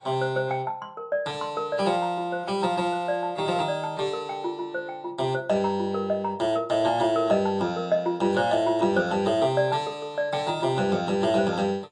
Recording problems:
lossy compression; AAC, log-spectral distance 2 dB, nothing above 9.2 kHz

